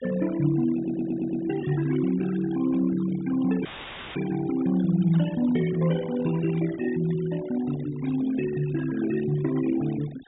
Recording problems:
treble missing; nothing above 4 kHz
noise reduction artefacts; signal-to-artefact ratio 15 dB
audio stuttering; at 1 s
dropout; at 3.5 s for 0.5 s; filled with static
static burst; at 5 s, at 6.5 s and at 8 s; peak -20 dB vs average level

